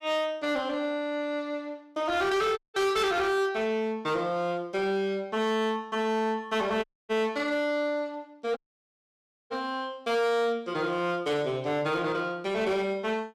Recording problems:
distortion; hard clipping, uneven, signal-to-distortion ratio 12 dB
audio cutting out; at 2.5 s, at 7 s and at 8.5 s for 1 s

